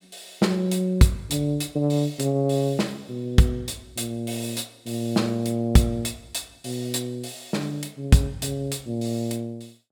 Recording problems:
none

